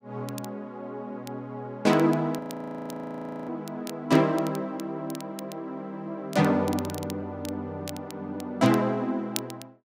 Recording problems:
crackle; vinyl, SNR 16 dB
frozen audio; at 2.5 s for 1 s

